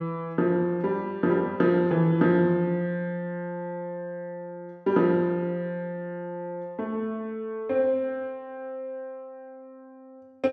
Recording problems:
none

